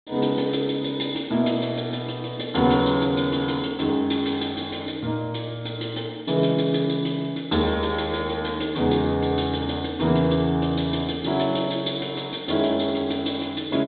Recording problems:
low-pass filter; nothing above 4 kHz

